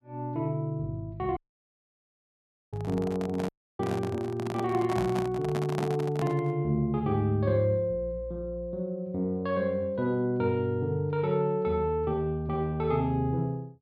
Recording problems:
dropout; at 1.5 s for 1.5 s and at 3.5 s
handling noise; from 2.5 to 6.5 s; peak 0 dB vs average level

